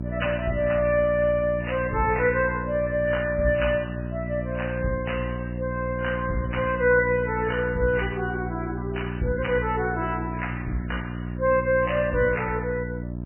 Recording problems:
codec artefacts; MP3, log-spectral distance 5 dB, nothing above 2.9 kHz
hum; 60 Hz, harmonics up to 720 Hz, SNR 7 dB

